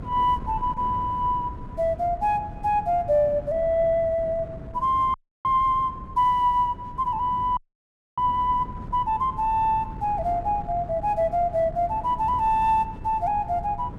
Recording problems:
wind noise; below 210 Hz, SNR 15 dB
frozen audio; at 5 s and at 7.5 s for 0.5 s

